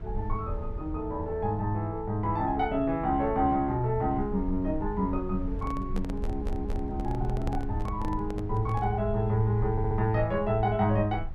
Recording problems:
rumble; below 68 Hz, SNR 9 dB
handling noise; from 5.5 to 9 s; peak -5 dB vs average level
stutter; at 6 s and at 9.5 s

